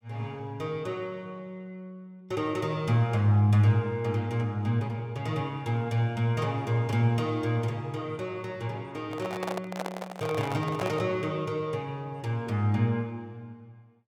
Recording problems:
handling noise; from 9 to 11 s; peak -1 dB vs average level

